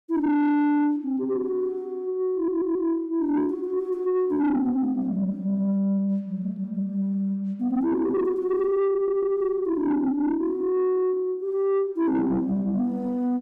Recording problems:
distortion; soft clipping, signal-to-distortion ratio 7 dB
audio stuttering; at 2.5 s and at 9 s

